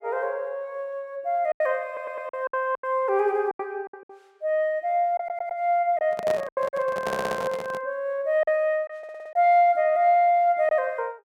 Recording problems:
lost packets; 7% of the sound replaced, filled with silence
audio stuttering; 4 times, first at 2 s
microphone handling noise; from 6 to 8 s; peak -2 dB vs average level

